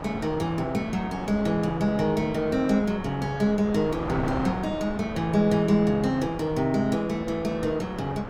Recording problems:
wind noise; below 1 kHz, SNR 11 dB

